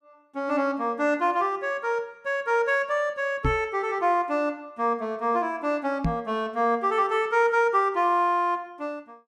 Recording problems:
microphone bump; at 3.5 s and at 6 s; peak +2 dB vs average level

